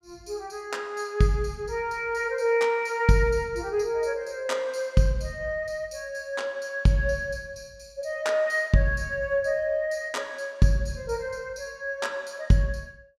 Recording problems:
none

